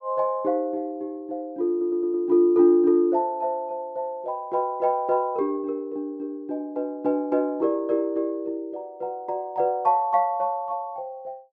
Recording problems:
audio stuttering; at 1.5 s

